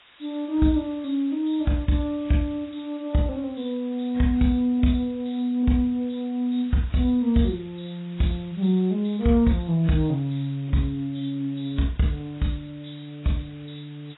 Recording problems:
lossy codec; AAC, log-spectral distance 7 dB, nothing above 3.8 kHz
background hiss; SNR 27 dB

